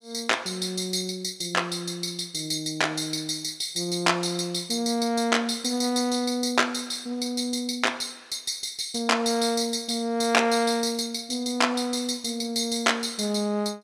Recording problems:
none

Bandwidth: 15.5 kHz